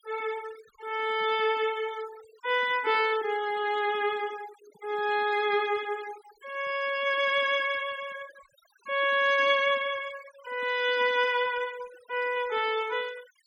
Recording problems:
noise reduction artefacts; signal-to-artefact ratio 19 dB

